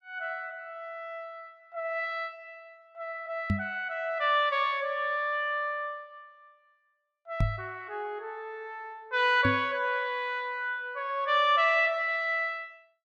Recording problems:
knock on the microphone; at 3.5 s, at 7.5 s and at 9.5 s; peak +5 dB vs average level

